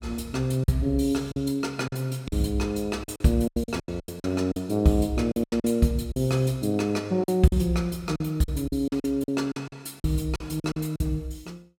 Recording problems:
lost packets; 12% of the sound replaced, filled with silence

